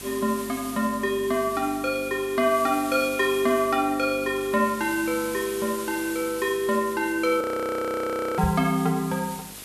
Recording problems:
hum; 50 Hz, harmonics up to 1.1 kHz, SNR 23 dB
background hiss; slope 0 dB per octave, SNR 14 dB
frozen audio; at 7.5 s for 1 s
microphone bump; at 8.5 s; peak +1 dB vs average level

